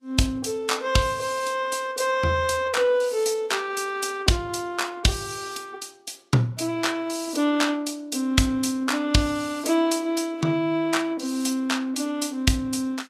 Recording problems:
codec artefacts; Vorbis, log-spectral distance 3 dB, nothing above 12.7 kHz

